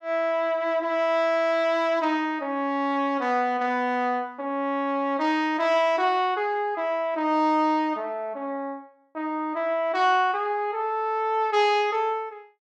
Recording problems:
none

